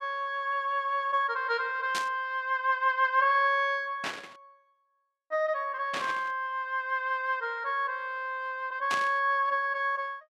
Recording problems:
static burst; 4 times, first at 2 s; peak -1 dB vs average level

